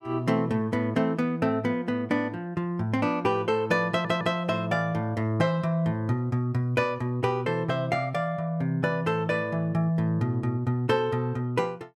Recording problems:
audio stuttering; at 4 s

